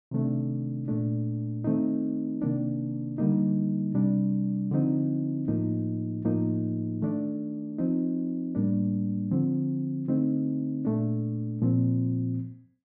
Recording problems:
none

